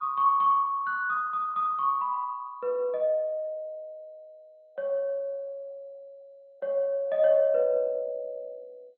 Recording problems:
lossy codec; MP2, log-spectral distance 2 dB, nothing above 3.5 kHz

